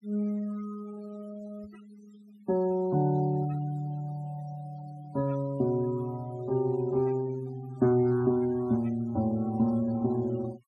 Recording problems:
denoising artefacts; signal-to-artefact ratio 24 dB

